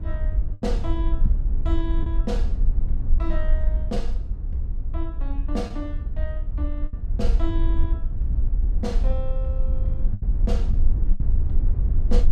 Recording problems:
low-frequency rumble; below 52 Hz, strongest tone 22 Hz, SNR -7 dB
lost packets; 3% of the sound replaced, filled with the last packet

